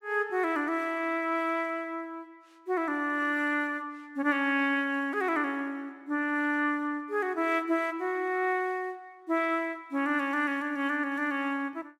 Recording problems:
none

